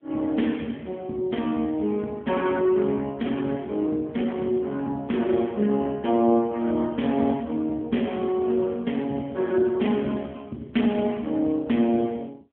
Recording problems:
telephone audio; 130 Hz to 3.4 kHz, AMR-NB

